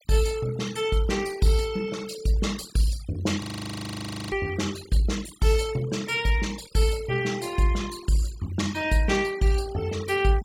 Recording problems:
noise reduction artefacts; signal-to-artefact ratio 17 dB
frozen audio; at 3.5 s for 1 s

